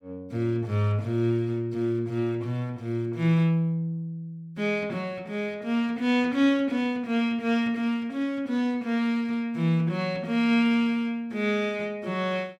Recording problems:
none

